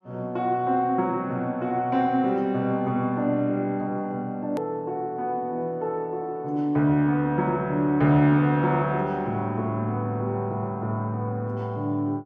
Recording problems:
hard cut with a click; at 4.5 s

